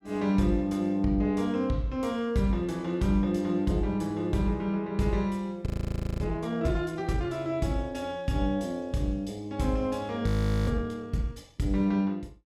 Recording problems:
frozen audio; at 5.5 s for 0.5 s and at 10 s

